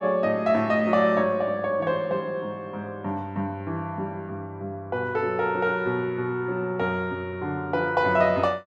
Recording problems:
none

